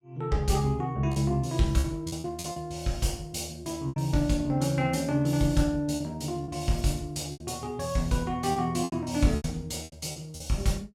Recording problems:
lost packets; 8% of the sound replaced, filled with repeated pitch periods

